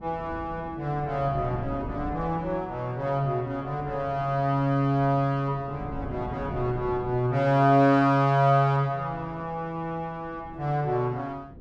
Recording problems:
wind noise; below 270 Hz, SNR 16 dB

